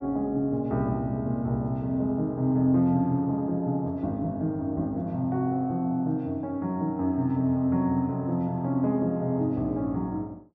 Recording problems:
low-pass filter; nothing above 8 kHz

